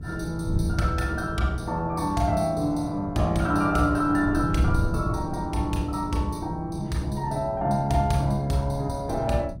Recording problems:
hum; 60 Hz, harmonics up to 660 Hz, SNR 16 dB
wind on the microphone; below 140 Hz, SNR 9 dB

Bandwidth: 16 kHz